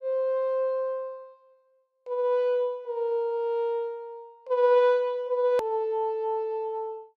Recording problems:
edit click; at 5.5 s

